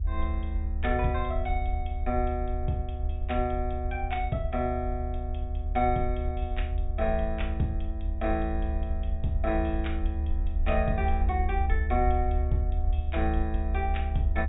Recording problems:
treble missing; nothing above 4 kHz
low-frequency rumble; below 74 Hz, SNR 0 dB

